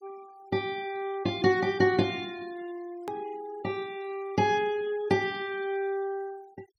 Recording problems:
denoising artefacts; signal-to-artefact ratio 23 dB
edit click; at 3 s

